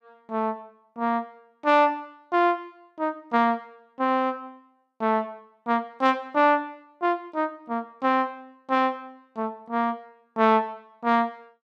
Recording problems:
none

